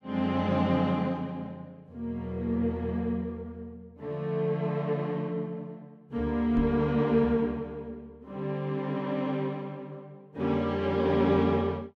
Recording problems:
knock on the microphone; at 6.5 s; peak 0 dB vs average level

